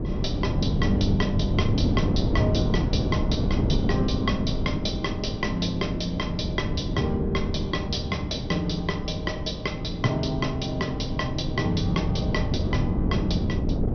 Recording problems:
low-pass filter; nothing above 6 kHz
wind noise; below 250 Hz, SNR 0 dB

